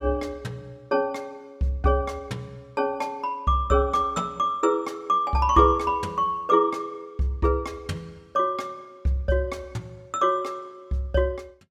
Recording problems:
none

